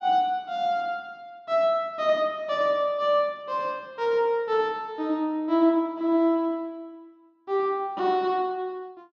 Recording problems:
none

